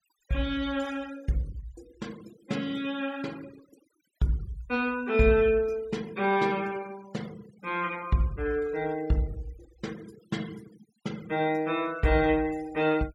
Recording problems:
denoising artefacts; signal-to-artefact ratio 23 dB

